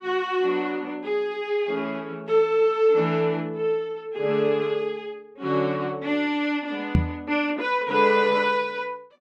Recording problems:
knock on the microphone; at 7 s; peak +8 dB vs average level

